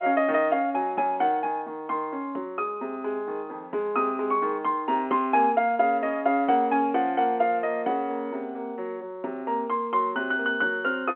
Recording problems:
telephone audio; 240 Hz to 3.3 kHz, G.711

